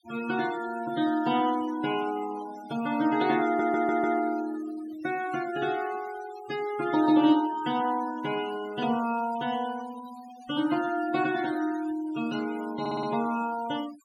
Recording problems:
noise reduction artefacts; signal-to-artefact ratio 17 dB
stutter; at 3.5 s and at 13 s

